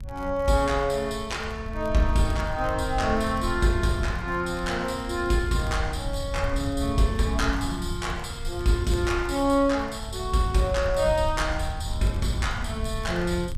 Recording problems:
wind noise; below 94 Hz, SNR 8 dB
crackle; vinyl, SNR 27 dB

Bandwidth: 14.5 kHz